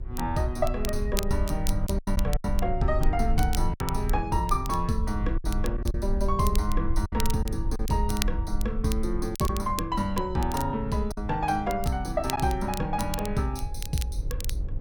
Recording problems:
hum; 50 Hz, harmonics up to 550 Hz, SNR 24 dB
low-frequency rumble; below 60 Hz, SNR 4 dB
crackle; vinyl, SNR 11 dB
packet loss; 4% of the sound replaced, filled with silence

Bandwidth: 18 kHz